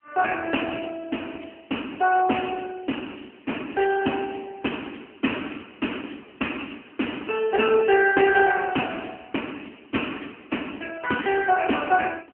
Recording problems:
phone line; 220 Hz to 3.1 kHz, AMR-NB

